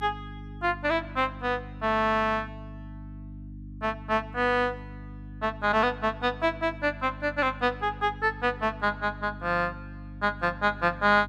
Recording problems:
electrical hum; 50 Hz, harmonics up to 300 Hz, SNR 15 dB

